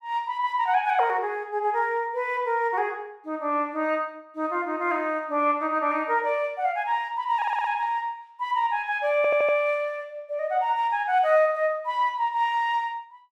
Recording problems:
audio stuttering; at 7.5 s and at 9 s

